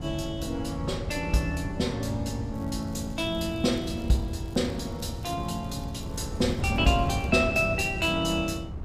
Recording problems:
wind noise; below 170 Hz, SNR 7 dB
crackling; from 2.5 to 7.5 s; loose cable, SNR 28 dB

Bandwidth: 15 kHz